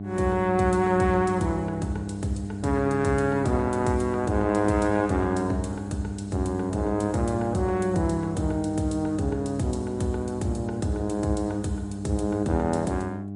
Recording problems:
lossy codec; MP3, log-spectral distance 2 dB, nothing above 10.7 kHz
mains hum; 50 Hz, harmonics up to 800 Hz, SNR 8 dB

